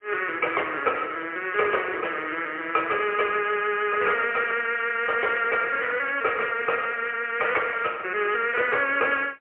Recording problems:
phone line; 340 Hz to 3.2 kHz, AMR-NB, then MP3

